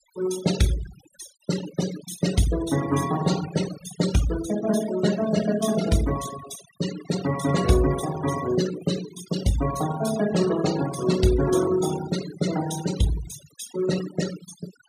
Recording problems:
noise reduction artefacts; signal-to-artefact ratio 9 dB

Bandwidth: 14.5 kHz